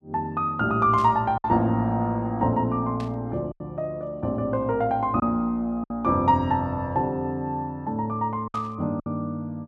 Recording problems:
lost packets; 4% of the sound replaced, filled with silence
static burst; at 1 s, at 3 s and at 8.5 s; peak -13 dB vs average level

